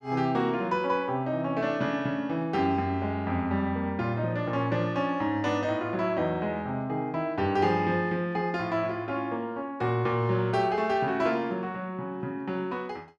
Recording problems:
none

